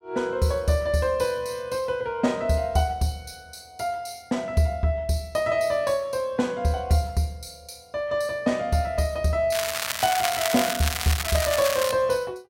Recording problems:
crackle; from 9.5 to 12 s; loose cable, SNR 2 dB

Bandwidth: 16 kHz